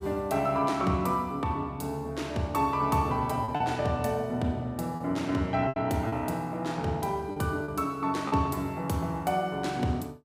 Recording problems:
packet loss; 4% of the sound replaced, filled with repeated pitch periods

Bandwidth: 15.5 kHz